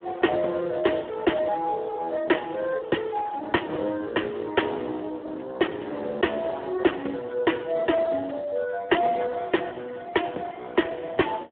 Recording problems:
telephone audio; 240 Hz to 3.4 kHz, Speex

